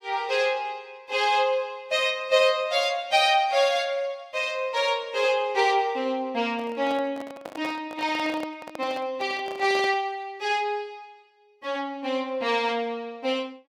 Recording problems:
handling noise; from 6.5 to 10 s; peak -6 dB vs average level

